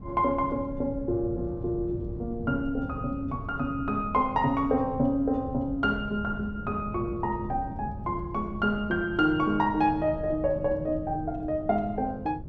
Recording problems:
wind noise; below 180 Hz, SNR 11 dB

